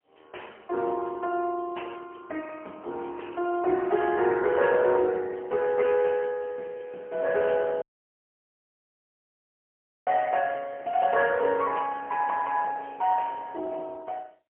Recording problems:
phone line; 300 Hz to 3 kHz, AMR-NB, then MP3
audio cutting out; at 8 s for 2.5 s

